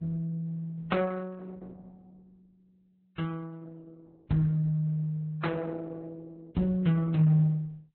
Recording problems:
codec artefacts; Opus, then Vorbis, log-spectral distance 2 dB, nothing above 3.8 kHz

